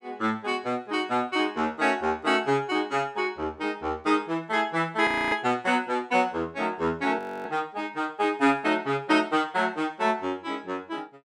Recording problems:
frozen audio; at 5 s and at 7 s

